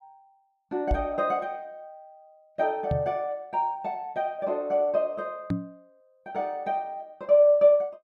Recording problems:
knock on the microphone; at 1 s, at 3 s and at 5.5 s; peak +2 dB vs average level

